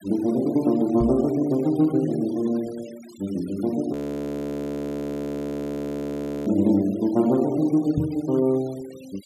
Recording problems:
noise reduction artefacts; signal-to-artefact ratio 24 dB
knock on the microphone; at 1 s and at 8 s; peak +1 dB vs average level
frozen audio; at 4 s for 2.5 s

